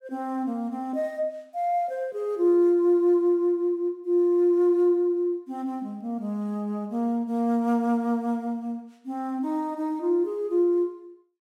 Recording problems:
none

